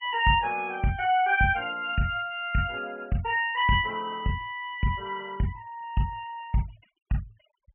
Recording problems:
treble missing; nothing above 3 kHz
noise reduction artefacts; signal-to-artefact ratio 25 dB

